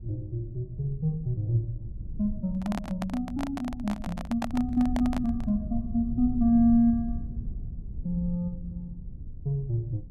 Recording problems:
rumble; below 100 Hz, SNR 11 dB
handling noise; from 2.5 to 5.5 s; peak -1 dB vs average level

